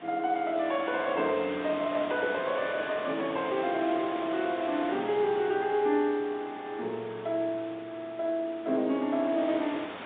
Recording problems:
phone line; 190 Hz to 3.8 kHz, G.711
wind on the microphone; below 2.4 kHz, SNR 12 dB

